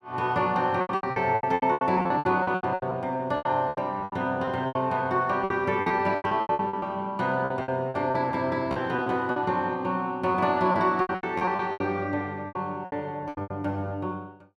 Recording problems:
packet loss; 19% of the sound replaced, filled with repeated pitch periods

